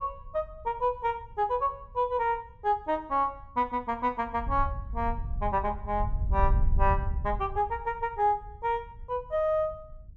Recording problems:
wind noise; below 74 Hz, SNR 3 dB

